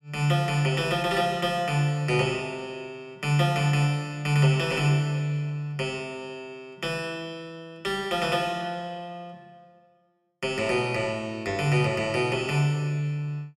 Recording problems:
none

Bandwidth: 14.5 kHz